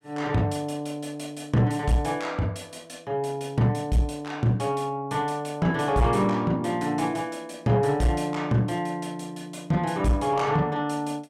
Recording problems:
distorted audio; soft clipping, signal-to-distortion ratio 10 dB

